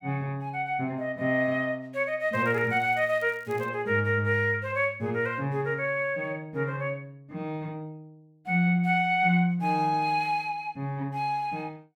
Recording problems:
crackling; from 2.5 to 3.5 s; loose cable, SNR 29 dB

